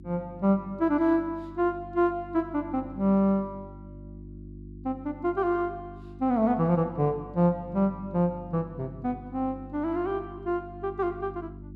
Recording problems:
hum; 50 Hz, harmonics up to 350 Hz, SNR 17 dB

